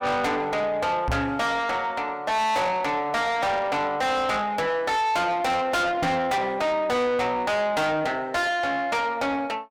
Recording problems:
distortion; soft clipping, signal-to-distortion ratio 6 dB
microphone bump; at 1 s and at 6 s; peak +4 dB vs average level

